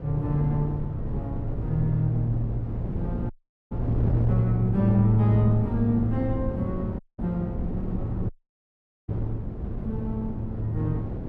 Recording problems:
wind on the microphone; below 210 Hz, SNR 5 dB
dropout; at 3.5 s, at 7 s and at 8.5 s for 1 s

